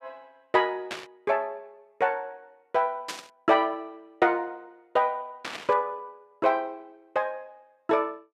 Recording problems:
burst of static; at 1 s, at 3 s and at 5.5 s; peak -2 dB vs average level

